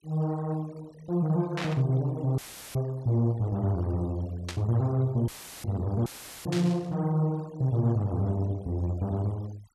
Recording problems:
noise reduction artefacts; signal-to-artefact ratio 26 dB
static burst; at 1.5 s, at 4.5 s and at 6.5 s; peak -2 dB vs average level
audio cutting out; at 2.5 s, at 5.5 s and at 6 s; filled with static

